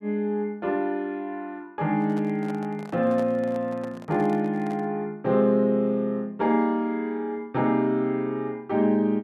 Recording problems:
microphone handling noise; from 2 to 5 s; peak -10 dB vs average level

